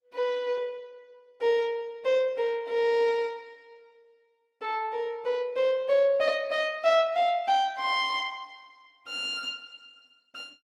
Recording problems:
lossy codec; Opus, log-spectral distance 2 dB

